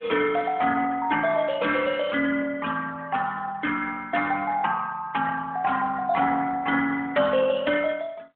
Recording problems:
telephone audio; 320 Hz to 3.6 kHz, AMR-NB

